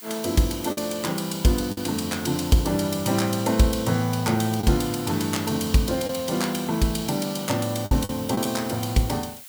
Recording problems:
hiss; SNR 15 dB
lost packets; 3% of the sound replaced, filled with the last packet

